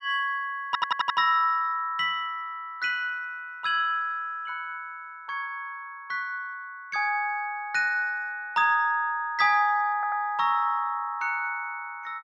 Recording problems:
audio stuttering; at 0.5 s and at 10 s

